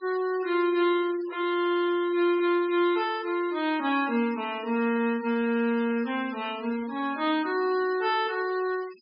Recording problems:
treble cut off; nothing above 5.5 kHz
noise reduction artefacts; signal-to-artefact ratio 20 dB

